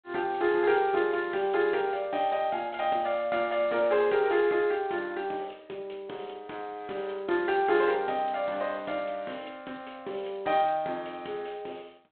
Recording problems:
phone line; 260 Hz to 3.9 kHz, G.726

